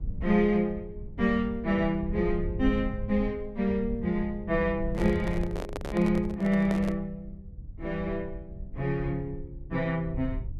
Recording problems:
rumble; below 90 Hz, SNR 11 dB
handling noise; from 5 to 7 s; peak -4 dB vs average level

